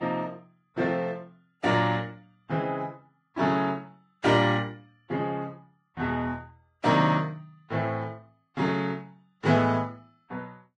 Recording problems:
lossy codec; Vorbis, log-spectral distance 2 dB

